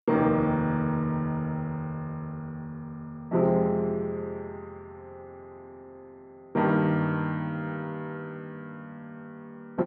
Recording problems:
none

